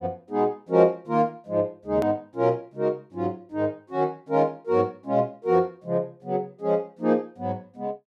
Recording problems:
click at an edit; at 2 s

